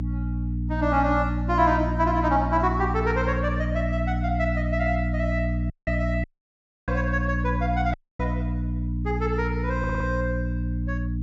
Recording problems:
treble missing; nothing above 8 kHz
hum; 60 Hz, harmonics up to 300 Hz, SNR 1 dB
audio cutting out; at 5.5 s, at 6 s for 0.5 s and at 8 s
stutter; at 10 s

